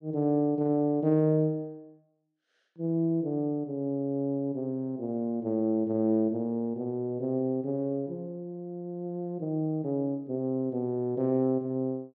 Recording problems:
none

